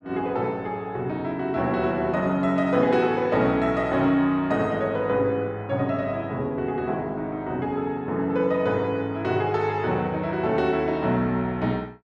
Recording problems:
none

